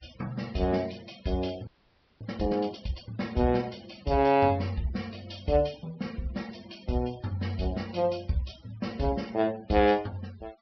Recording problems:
treble missing; nothing above 5.5 kHz
denoising artefacts; signal-to-artefact ratio 22 dB
frozen audio; at 1.5 s for 0.5 s

